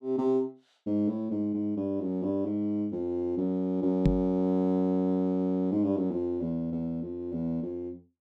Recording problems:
microphone bump; at 4 s; peak +8 dB vs average level

